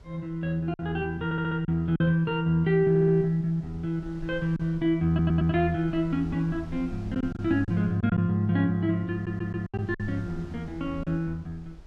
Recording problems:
wind on the microphone; below 70 Hz, SNR 22 dB
packet loss; 4% of the sound replaced, filled with silence
audio stuttering; 4 times, first at 1.5 s

